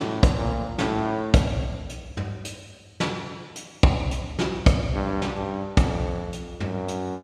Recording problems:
none

